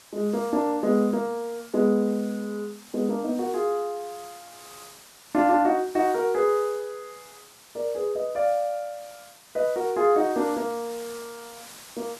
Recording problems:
background hiss; slope 0 dB per octave, SNR 20 dB

